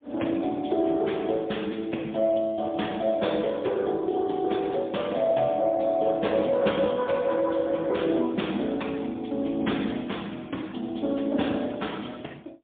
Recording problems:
phone line; 150 Hz to 3.7 kHz, AMR-NB, then MP3

